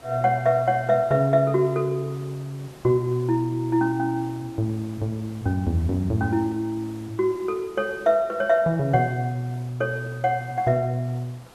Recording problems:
hiss; slope -5 dB per octave, SNR 23 dB

